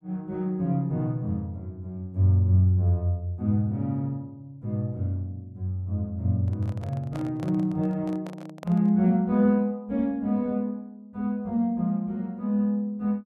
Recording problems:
handling noise; from 6.5 to 9 s; peak -10 dB vs average level

